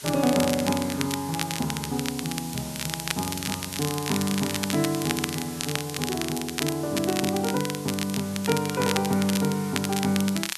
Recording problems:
hiss; slope +3 dB per octave, SNR 11 dB
crackling; vinyl, SNR 5 dB

